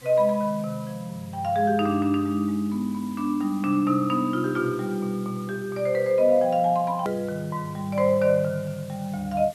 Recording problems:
background hiss; slope -1 dB per octave, SNR 24 dB
edit click; at 7 s

